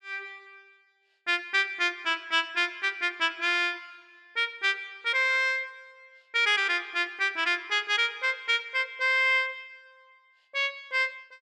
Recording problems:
none

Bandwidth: 14 kHz